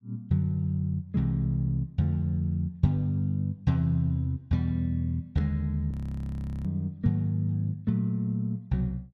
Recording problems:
audio freezing; at 6 s for 0.5 s

